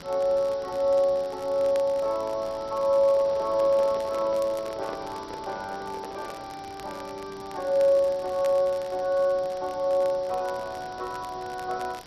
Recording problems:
lossy compression; MP2, log-spectral distance 7 dB
background hiss; SNR 20 dB
crackling; vinyl, SNR 24 dB
handling noise; from 3 to 6.5 s; peak -9 dB vs average level

